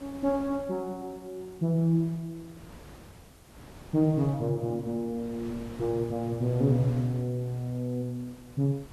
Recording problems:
background hiss; slope 0 dB per octave, SNR 29 dB
wind on the microphone; below 730 Hz, SNR 19 dB

